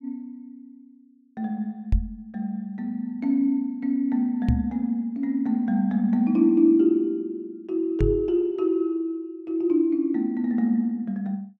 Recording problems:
microphone thump; at 2 s, at 4.5 s and at 8 s; peak +5 dB vs average level

